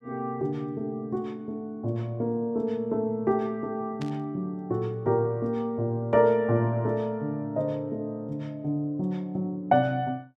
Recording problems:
burst of static; at 4 s; peak -10 dB vs average level

